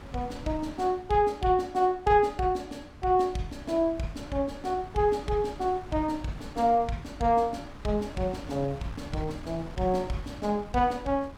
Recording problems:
wind on the microphone; below 420 Hz, SNR 17 dB

